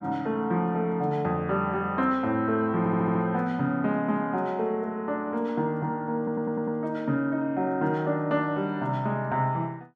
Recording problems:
audio stuttering; at 3 s and at 6 s

